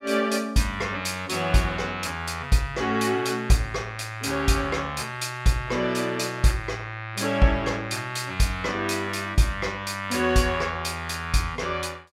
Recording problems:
none

